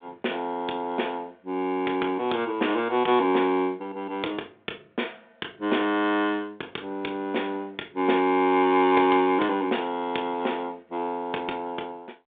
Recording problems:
phone line; 220 Hz to 3.6 kHz, G.726

